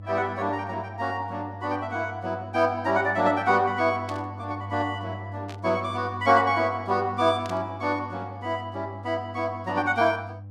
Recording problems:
hum; 50 Hz, harmonics up to 500 Hz, SNR 14 dB
static burst; at 4 s, at 5.5 s and at 7.5 s; peak -11 dB vs average level

